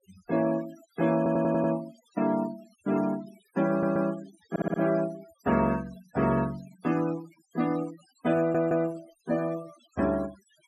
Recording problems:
noise reduction artefacts; signal-to-artefact ratio 18 dB
audio stuttering; 4 times, first at 1 s

